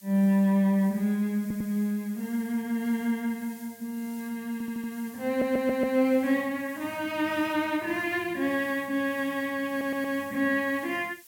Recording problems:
background hiss; slope +3 dB per octave, SNR 21 dB
stutter; 4 times, first at 1.5 s

